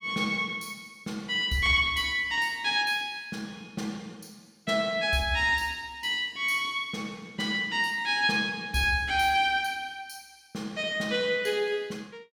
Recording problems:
none

